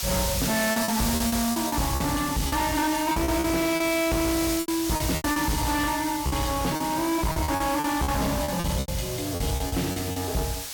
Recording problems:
distorted audio; soft clipping, signal-to-distortion ratio 7 dB
hiss; slope +2 dB per octave, SNR 5 dB
packet loss; 13% of the sound replaced, filled with repeated pitch periods

